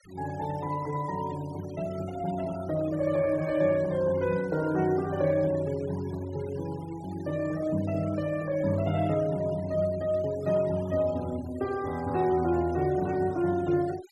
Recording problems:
denoising artefacts; signal-to-artefact ratio 21 dB

